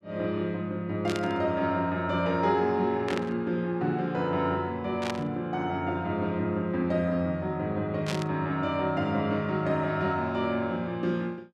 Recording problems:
static burst; 4 times, first at 1 s; peak -2 dB vs average level

